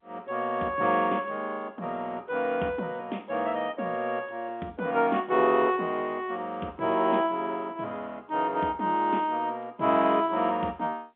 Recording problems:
telephone audio; 170 Hz to 3.4 kHz, G.711

